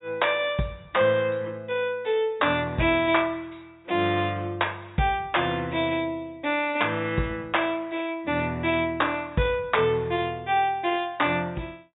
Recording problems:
treble cut off; nothing above 4 kHz

